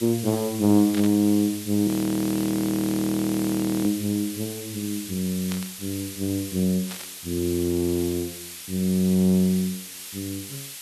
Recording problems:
background hiss; slope +3 dB per octave, SNR 11 dB
static burst; at 1 s, at 5.5 s and at 7 s; peak -7 dB vs average level
frozen audio; at 2 s for 2 s

